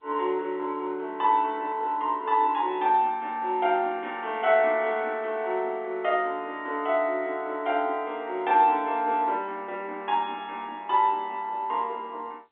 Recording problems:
telephone audio; 320 Hz to 3.6 kHz, G.711

